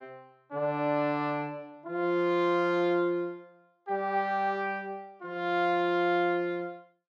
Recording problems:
none

